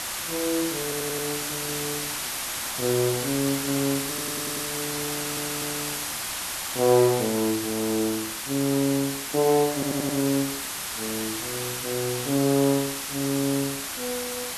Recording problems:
background hiss; SNR 2 dB
audio stuttering; 4 times, first at 1 s

